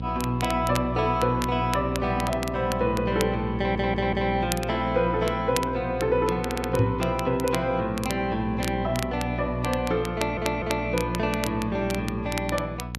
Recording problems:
electrical hum; 60 Hz, harmonics up to 720 Hz, SNR 7 dB
crackling; vinyl, SNR 12 dB
stutter; at 3.5 s, at 6.5 s and at 10 s
microphone thump; at 7 s; peak +6 dB vs average level

